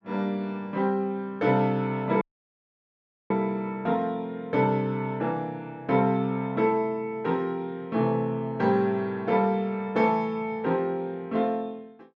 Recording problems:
audio cutting out; at 2 s for 1 s

